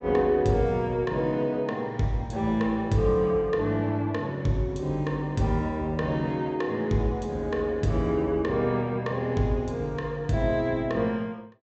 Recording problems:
treble cut off; nothing above 8 kHz

